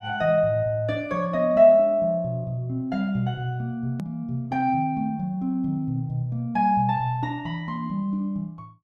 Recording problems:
hard cut with a click; at 4 s

